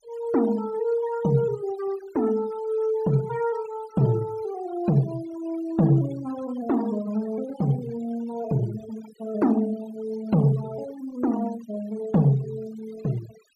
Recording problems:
denoising artefacts; signal-to-artefact ratio 21 dB

